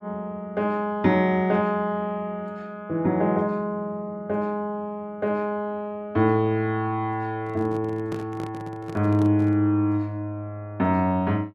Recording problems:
handling noise; from 7.5 to 9.5 s; peak -6 dB vs average level

